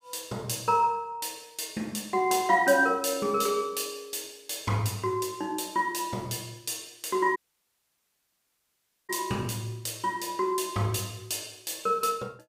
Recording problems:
audio cutting out; at 7.5 s for 1.5 s

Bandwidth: 15.5 kHz